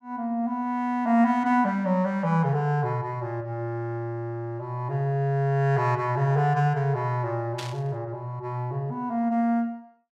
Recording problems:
burst of static; at 7.5 s; peak -5 dB vs average level

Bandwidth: 14.5 kHz